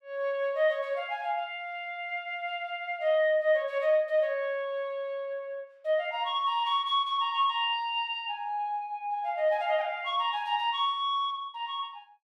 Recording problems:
none

